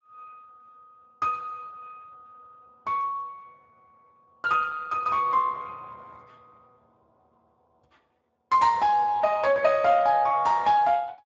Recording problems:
codec artefacts; Speex, log-spectral distance 3 dB, nothing above 7.3 kHz

